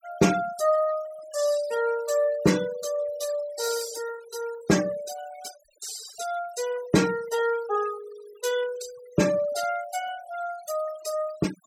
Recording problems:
noise reduction artefacts; signal-to-artefact ratio 14 dB

